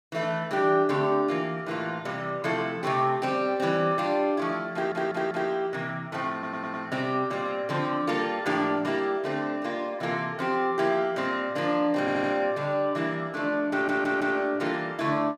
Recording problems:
stutter; 4 times, first at 4.5 s

